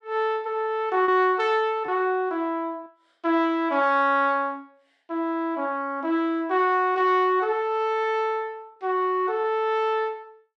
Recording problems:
packet loss; 1.1% of the sound replaced, filled with repeated pitch periods

